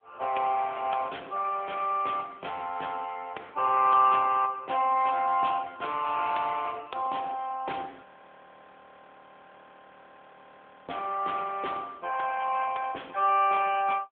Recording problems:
telephone audio; 340 Hz to 3.4 kHz, AMR-NB
frozen audio; at 8 s for 3 s

